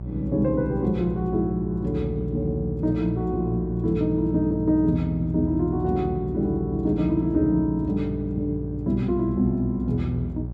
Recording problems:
electrical hum; 60 Hz, harmonics up to 600 Hz, SNR 9 dB

